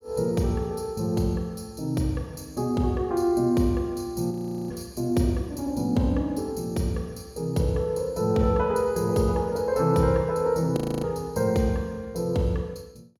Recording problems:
frozen audio; at 4.5 s and at 11 s

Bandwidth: 17 kHz